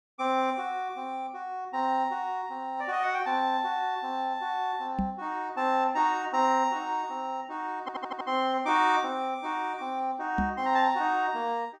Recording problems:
knock on the microphone; at 5 s and at 10 s; peak +2 dB vs average level
audio stuttering; at 8 s

